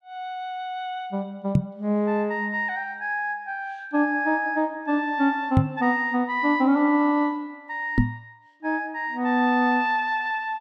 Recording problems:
microphone bump; at 1.5 s, at 5.5 s and at 8 s; peak +8 dB vs average level

